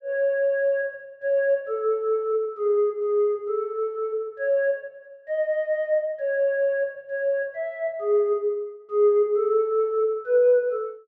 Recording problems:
none

